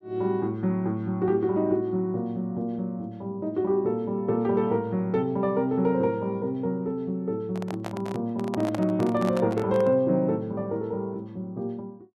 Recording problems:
microphone handling noise; from 7.5 to 10 s; peak -4 dB vs average level

